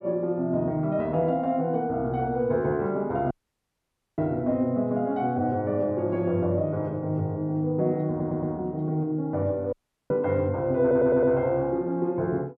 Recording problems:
dropout; at 3.5 s for 1 s and at 9.5 s
stutter; at 8 s and at 11 s

